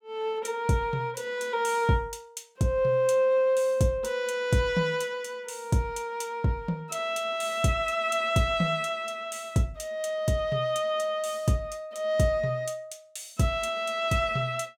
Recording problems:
none

